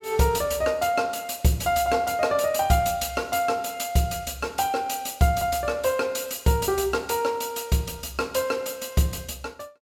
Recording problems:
none

